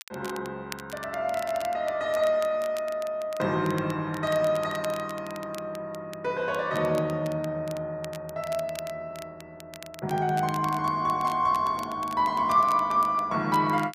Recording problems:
crackling; vinyl, SNR 19 dB

